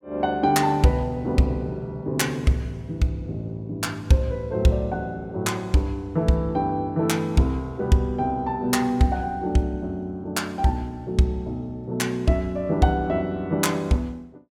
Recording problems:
none

